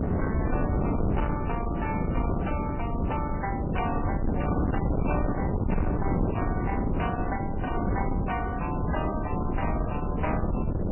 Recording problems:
lossy compression; MP3, log-spectral distance 3 dB, nothing above 2.7 kHz
distortion; soft clipping, signal-to-distortion ratio 12 dB
wind noise; below 330 Hz, SNR -4 dB

